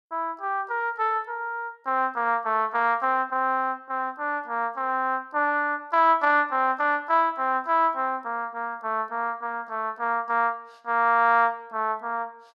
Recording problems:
none

